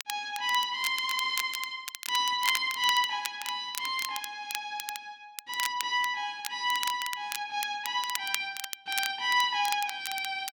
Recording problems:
crackling; vinyl, SNR 8 dB

